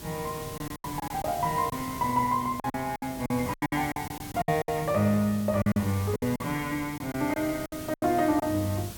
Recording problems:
background hiss; SNR 12 dB
packet loss; 13% of the sound replaced, filled with silence

